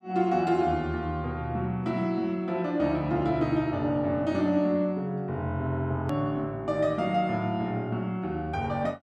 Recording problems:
edit click; at 6 s

